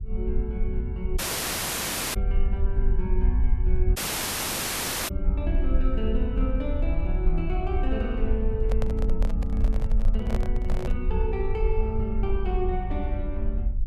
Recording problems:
rumble; below 56 Hz, SNR -4 dB
dropout; at 1 s for 1 s and at 4 s for 1 s
handling noise; from 8.5 to 11 s; peak +3 dB vs average level

